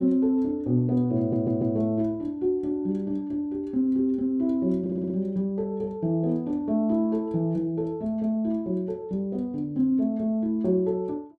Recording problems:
stutter; at 1 s and at 5 s

